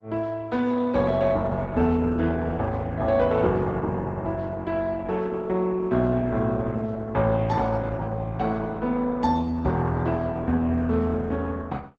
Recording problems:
codec artefacts; Opus, log-spectral distance 2 dB, nothing above 7.6 kHz

